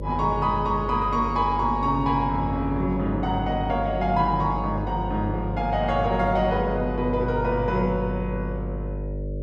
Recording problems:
electrical hum; 50 Hz, harmonics up to 600 Hz, SNR 7 dB

